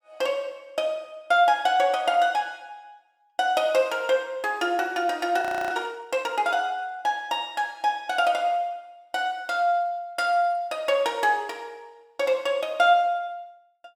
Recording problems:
audio freezing; at 5.5 s

